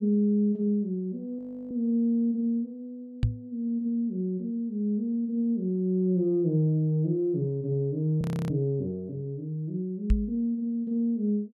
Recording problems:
frozen audio; at 1.5 s and at 8 s
knock on the microphone; at 3 s and at 10 s; peak +6 dB vs average level

